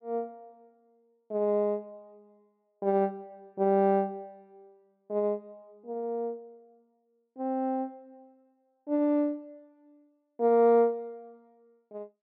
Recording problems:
none

